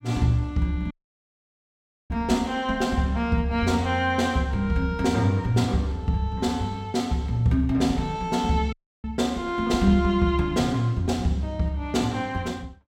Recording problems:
audio cutting out; at 1 s for 1 s and at 8.5 s

